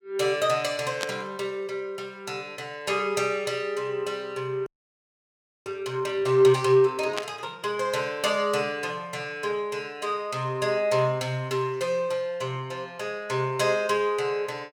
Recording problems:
static burst; at 1 s and at 7 s; peak +1 dB vs average level
audio freezing; at 4.5 s for 1 s

